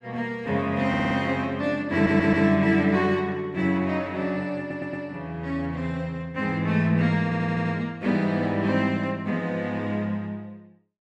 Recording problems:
audio stuttering; 4 times, first at 1 s

